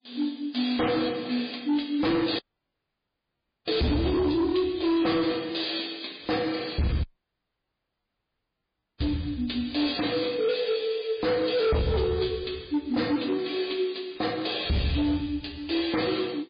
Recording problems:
codec artefacts; MP3, log-spectral distance 9 dB, nothing above 4.8 kHz
distorted audio; hard clipping, signal-to-distortion ratio 8 dB
dropout; at 2.5 s for 1.5 s and at 7 s for 2 s

